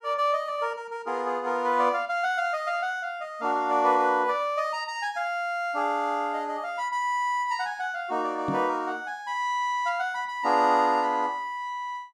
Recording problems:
knock on the microphone; at 8.5 s; peak 0 dB vs average level

